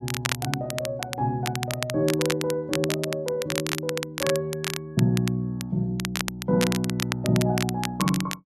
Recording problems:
crackling; vinyl, SNR 5 dB

